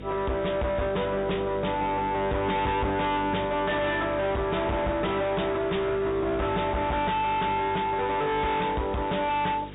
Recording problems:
low-pass filter; nothing above 4 kHz
distortion; hard clipping, uneven, signal-to-distortion ratio 6 dB
hum; 50 Hz, harmonics up to 500 Hz, SNR 13 dB
background hiss; SNR 23 dB

